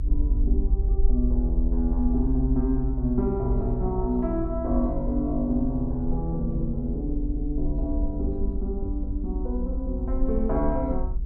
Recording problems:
rumble; below 56 Hz, SNR 1 dB

